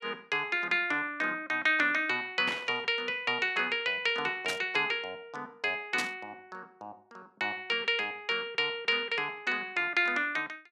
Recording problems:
static burst; at 2.5 s, at 4.5 s and at 6 s; peak -1 dB vs average level

